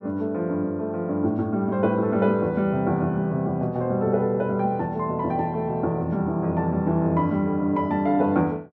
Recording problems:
none

